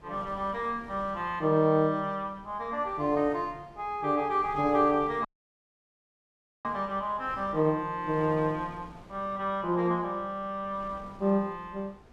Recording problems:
wind noise; below 680 Hz, SNR 22 dB
dropout; at 5.5 s for 1.5 s

